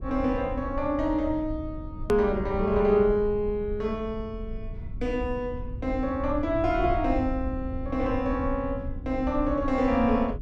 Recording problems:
rumble; below 90 Hz, SNR 10 dB
hard cut with a click; at 2 s

